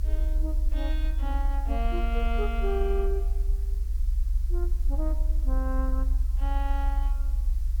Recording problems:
background hiss; slope -1 dB per octave, SNR 20 dB
low-frequency rumble; below 56 Hz, strongest tone 34 Hz, SNR -7 dB

